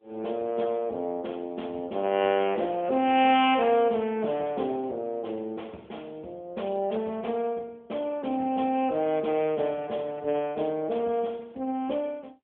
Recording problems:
telephone audio; 190 Hz to 3.4 kHz, AMR-NB

